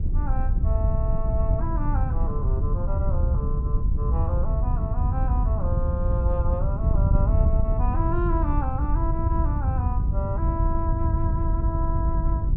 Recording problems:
wind noise; below 92 Hz, SNR -8 dB

